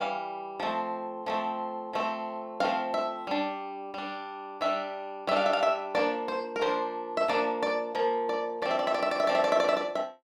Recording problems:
none

